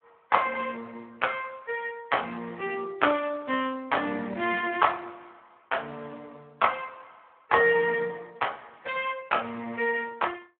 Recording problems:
telephone audio; 260 Hz to 3.4 kHz, Speex

